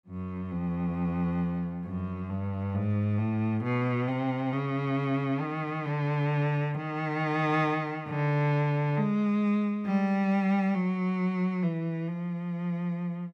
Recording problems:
none

